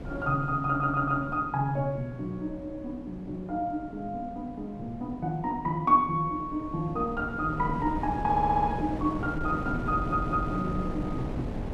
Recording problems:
wind on the microphone; below 370 Hz, SNR 8 dB
stutter; at 0.5 s, at 8.5 s and at 10 s

